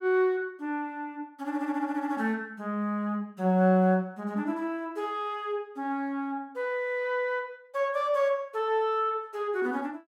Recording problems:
none

